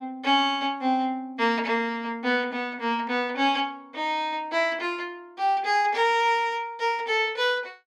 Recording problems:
none

